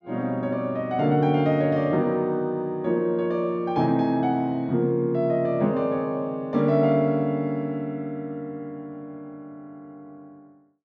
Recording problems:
none

